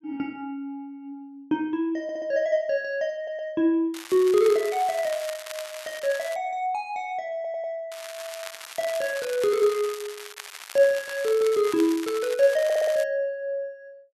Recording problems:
stutter; 4 times, first at 2 s
crackling; from 4 to 6.5 s and from 8 to 13 s; loose cable, SNR 13 dB

